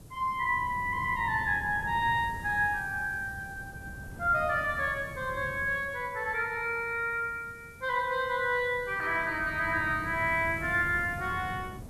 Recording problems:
hiss; SNR 27 dB
wind on the microphone; below 230 Hz, SNR 15 dB

